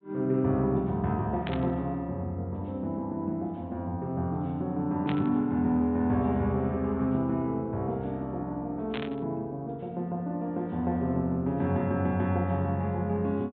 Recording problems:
treble cut off; nothing above 4 kHz
static burst; at 1.5 s, at 5 s and at 9 s; peak -4 dB vs average level

